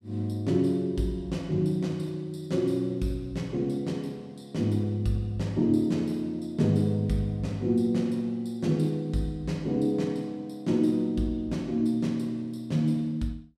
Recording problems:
none

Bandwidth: 14.5 kHz